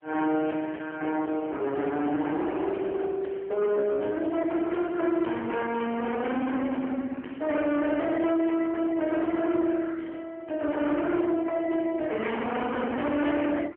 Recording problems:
phone line; 260 Hz to 3.3 kHz, AMR-NB
distorted audio; hard clipping, uneven, signal-to-distortion ratio 7 dB

